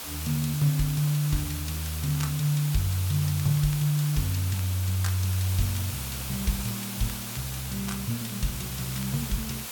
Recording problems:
hiss; slope 0 dB per octave, SNR 6 dB
crackle; vinyl, SNR 22 dB

